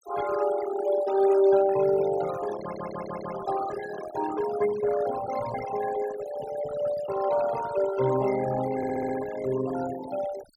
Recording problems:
denoising artefacts; signal-to-artefact ratio 12 dB
stutter; at 2.5 s and at 9 s

